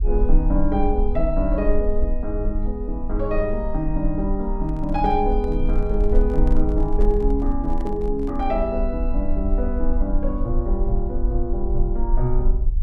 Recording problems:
rumble; below 46 Hz, SNR 1 dB
handling noise; from 4.5 to 8.5 s; peak -11 dB vs average level

